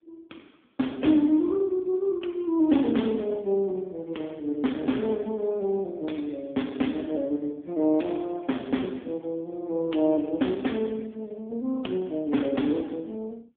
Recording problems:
phone line; 190 Hz to 3.5 kHz, AMR-NB

